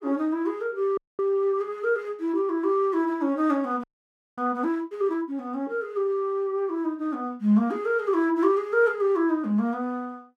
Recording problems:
audio freezing; at 1 s and at 4 s for 0.5 s

